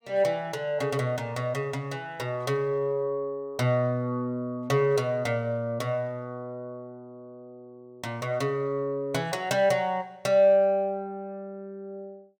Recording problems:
none

